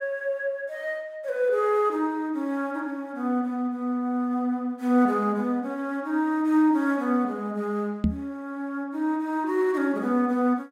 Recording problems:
knock on the microphone; at 8 s; peak +6 dB vs average level

